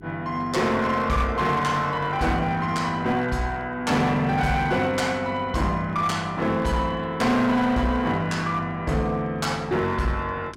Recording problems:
distorted audio; hard clipping, uneven, signal-to-distortion ratio 10 dB
mains hum; 50 Hz, harmonics up to 400 Hz, SNR 22 dB

